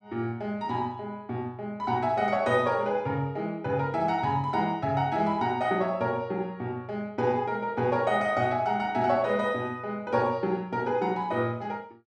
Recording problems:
none

